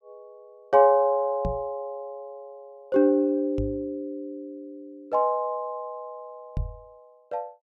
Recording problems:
microphone thump; at 1.5 s, at 3.5 s and at 6.5 s; peak -2 dB vs average level

